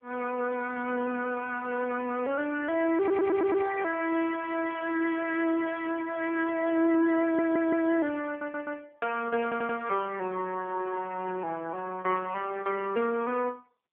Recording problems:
telephone audio; 300 Hz to 3 kHz, AMR-NB
audio stuttering; 4 times, first at 3 s

